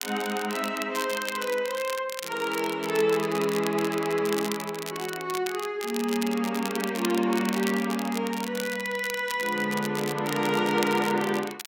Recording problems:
crackling; vinyl, SNR 10 dB

